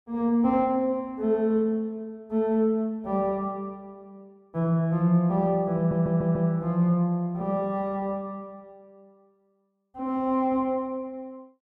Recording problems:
stutter; at 6 s

